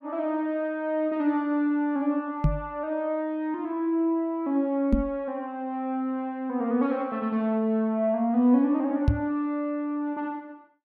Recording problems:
microphone thump; at 2.5 s, at 5 s and at 9 s; peak +8 dB vs average level

